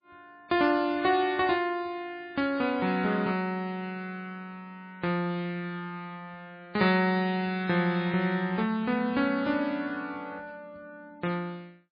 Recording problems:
codec artefacts; MP3, log-spectral distance 2 dB, nothing above 4.4 kHz

